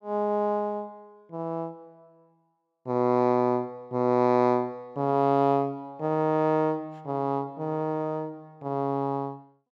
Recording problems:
none

